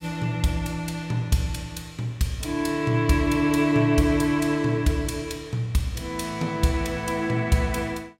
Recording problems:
none

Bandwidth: 16 kHz